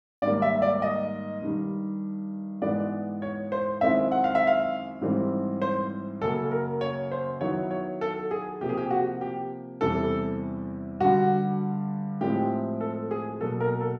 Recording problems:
none

